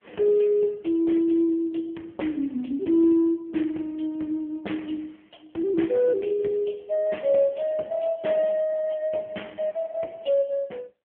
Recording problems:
telephone audio; 190 Hz to 3.3 kHz, AMR-NB

